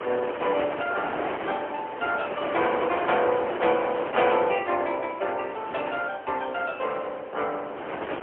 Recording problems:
telephone audio; 300 Hz to 3.1 kHz, AMR-NB, then MP3
wind on the microphone; below 1.4 kHz, SNR 6 dB

